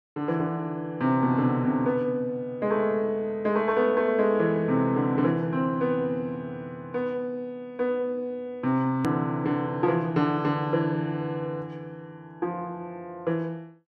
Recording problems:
click at an edit; at 9 s

